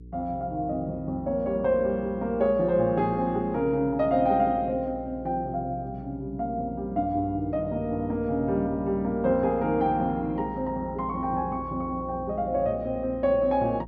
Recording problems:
hum; 60 Hz, harmonics up to 480 Hz, SNR 17 dB

